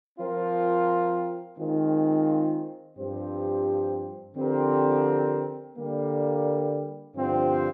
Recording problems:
none

